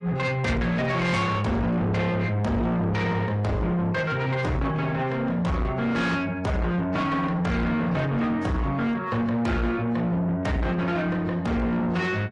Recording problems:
codec artefacts; AAC, log-spectral distance 2 dB, nothing above 10.4 kHz
distorted audio; soft clipping, signal-to-distortion ratio 7 dB

